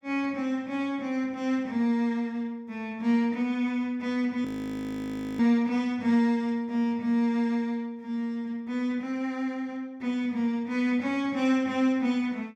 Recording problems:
frozen audio; at 4.5 s for 1 s

